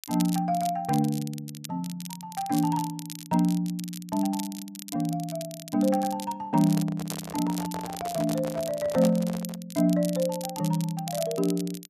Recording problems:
crackling; vinyl, SNR 13 dB
handling noise; from 6.5 to 9.5 s; peak -5 dB vs average level

